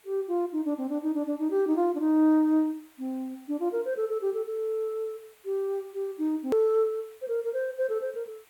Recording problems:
background hiss; SNR 29 dB
edit click; at 6.5 s

